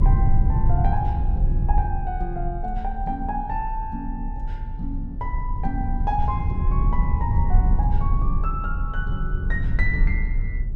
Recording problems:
low-frequency rumble; below 70 Hz, SNR -5 dB

